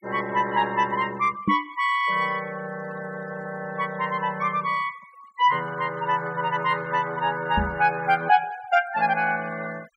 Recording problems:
noise reduction artefacts; signal-to-artefact ratio 21 dB
microphone bump; at 1.5 s and at 7.5 s; peak +4 dB vs average level

